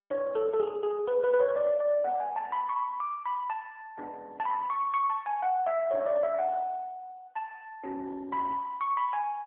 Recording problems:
phone line; 320 Hz to 2.9 kHz, AMR-NB

